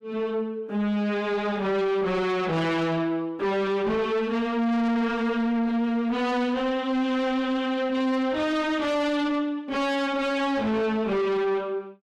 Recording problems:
distorted audio; soft clipping, signal-to-distortion ratio 5 dB

